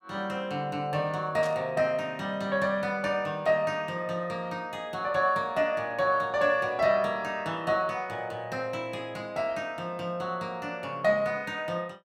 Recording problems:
burst of static; at 1.5 s; peak -10 dB vs average level

